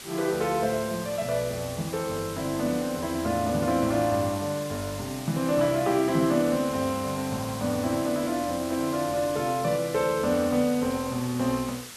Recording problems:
hiss; slope +1 dB per octave, SNR 12 dB

